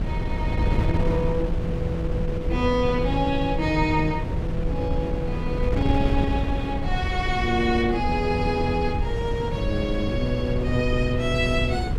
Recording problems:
wind on the microphone; below 160 Hz, SNR 2 dB

